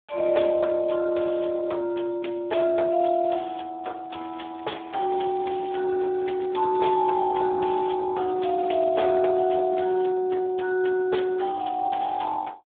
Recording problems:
telephone audio; 300 Hz to 3.6 kHz, Speex
crackle; at 3.5 s, from 4 to 7 s and from 8 to 9.5 s; loose cable, SNR 26 dB

